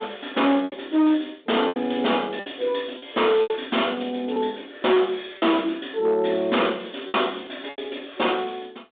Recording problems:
telephone audio; 220 Hz to 3.7 kHz, G.726
distortion; hard clipping, signal-to-distortion ratio 11 dB
packet loss; 7% of the sound replaced, filled with repeated pitch periods

